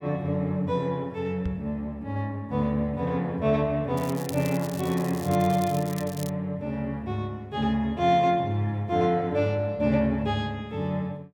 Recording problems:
microphone thump; at 1.5 s; peak -2 dB vs average level
crackle; from 4 to 6.5 s; loose cable, SNR 15 dB

